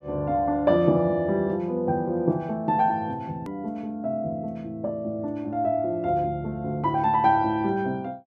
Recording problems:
hard cut with a click; at 3.5 s

